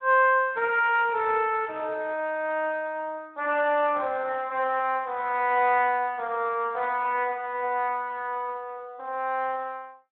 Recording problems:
phone line; 300 Hz to 3.1 kHz, Speex

